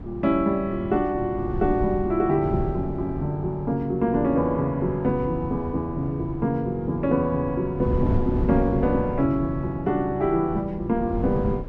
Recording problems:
wind on the microphone; below 200 Hz, SNR 8 dB

